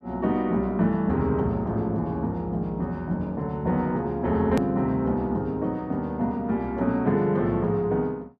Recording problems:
hard cut with a click; at 4.5 s

